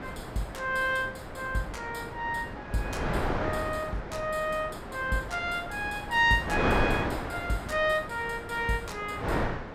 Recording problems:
wind noise; below 1.2 kHz, SNR 4 dB

